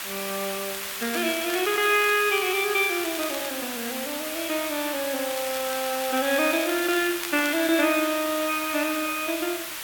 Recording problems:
hiss; SNR 6 dB
crackle; from 0.5 to 3.5 s and from 5.5 to 8 s; loose cable, SNR 13 dB

